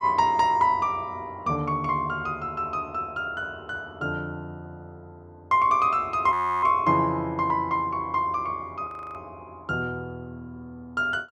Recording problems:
audio freezing; at 6.5 s and at 9 s

